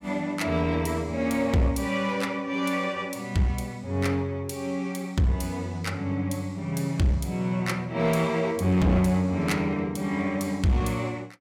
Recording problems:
distorted audio; hard clipping, uneven, signal-to-distortion ratio 9 dB

